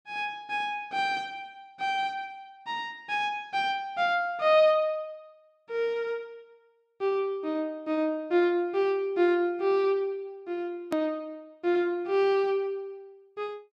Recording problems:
edit click; at 11 s

